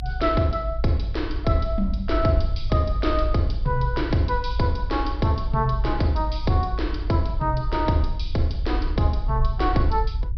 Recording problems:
treble cut off; nothing above 5.5 kHz
low-frequency rumble; below 54 Hz, SNR 4 dB

